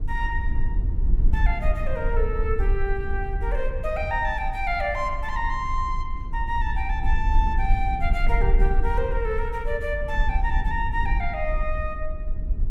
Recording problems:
low-frequency rumble; below 54 Hz, SNR -1 dB

